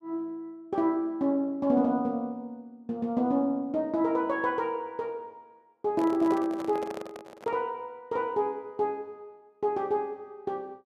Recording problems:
handling noise; from 6 to 7.5 s; peak -5 dB vs average level

